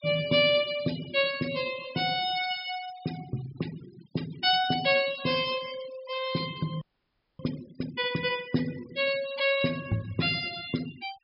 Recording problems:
treble missing; nothing above 5.5 kHz
noise reduction artefacts; signal-to-artefact ratio 16 dB
audio freezing; at 7 s for 0.5 s

